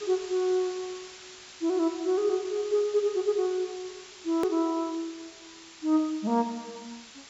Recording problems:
treble missing; nothing above 8 kHz
hiss; slope +2 dB per octave, SNR 17 dB
hard cut with a click; at 4.5 s

